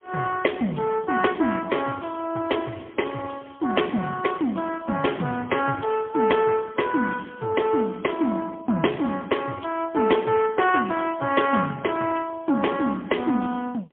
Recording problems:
phone line; 150 Hz to 3.3 kHz, AMR-NB, then MP3

